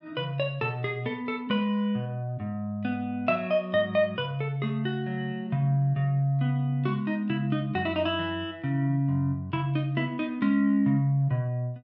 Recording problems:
none

